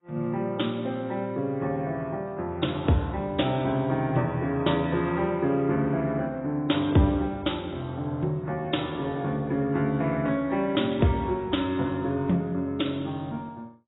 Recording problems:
codec artefacts; AAC, log-spectral distance 3 dB, nothing above 3.8 kHz

